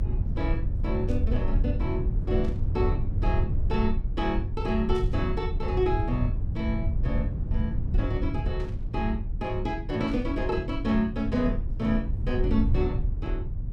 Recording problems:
rumble; below 96 Hz, SNR -1 dB
static burst; 5 times, first at 1 s; peak -14 dB vs average level

